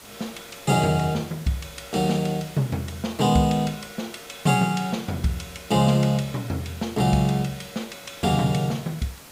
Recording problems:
hiss; slope -2 dB per octave, SNR 19 dB

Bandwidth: 15.5 kHz